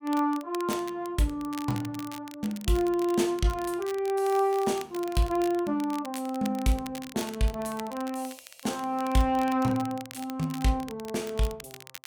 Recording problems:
crackle; vinyl, SNR 17 dB

